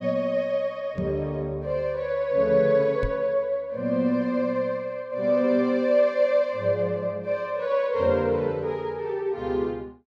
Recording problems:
microphone thump; at 1 s and at 3 s; peak -1 dB vs average level

